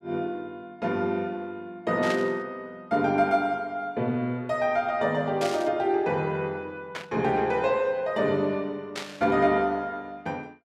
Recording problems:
burst of static; 4 times, first at 2 s; peak -3 dB vs average level

